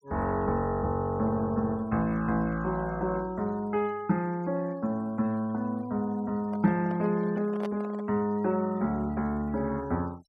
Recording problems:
denoising artefacts; signal-to-artefact ratio 27 dB
handling noise; from 6.5 to 8 s; peak -4 dB vs average level

